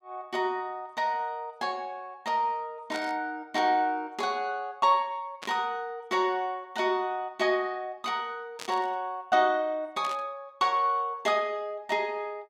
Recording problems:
static burst; 4 times, first at 3 s; peak -6 dB vs average level

